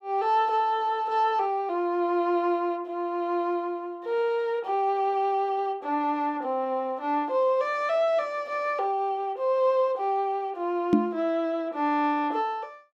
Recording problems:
microphone thump; at 11 s; peak +9 dB vs average level

